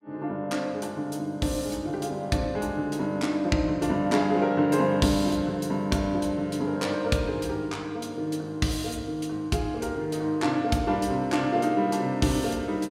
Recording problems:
none

